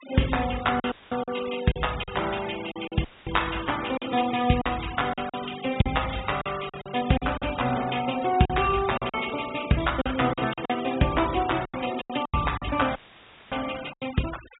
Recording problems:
treble cut off; nothing above 4 kHz
noise reduction artefacts; signal-to-artefact ratio 13 dB
packet loss; 10% of the sound replaced, filled with silence
audio cutting out; at 1 s, at 3 s and at 13 s for 0.5 s; filled with static

